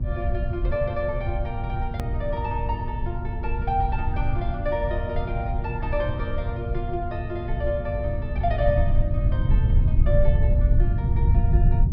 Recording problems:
treble missing; nothing above 5.5 kHz
hum; 60 Hz, harmonics up to 840 Hz, SNR 9 dB
rumble; below 92 Hz, SNR -4 dB
hard cut with a click; at 2 s

